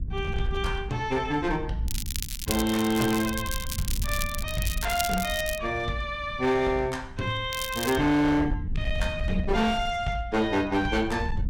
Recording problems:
distortion; hard clipping, uneven, signal-to-distortion ratio 12 dB
rumble; below 84 Hz, SNR 9 dB
crackle; from 2 to 3.5 s, from 3.5 to 5.5 s and at 7.5 s; loose cable, SNR 7 dB

